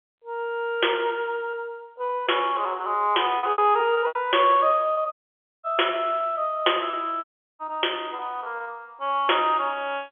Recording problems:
telephone audio; 300 Hz to 3.4 kHz, G.711
lost packets; 6% of the sound replaced, filled with repeated pitch periods
dropout; at 5 s for 0.5 s and at 7 s

